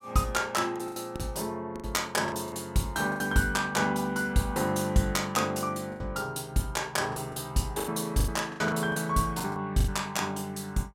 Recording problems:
lost packets; 10% of the sound replaced, filled with the last packet

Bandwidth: 16.5 kHz